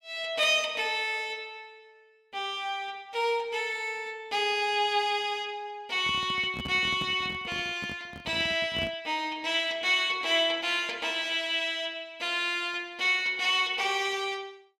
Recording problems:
microphone handling noise; from 6 to 9 s; peak -6 dB vs average level

